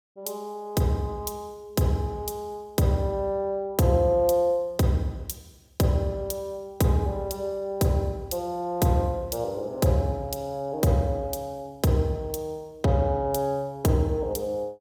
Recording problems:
none

